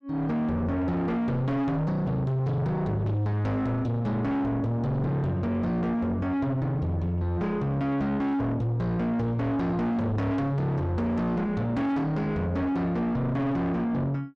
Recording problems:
distortion; soft clipping, signal-to-distortion ratio 7 dB

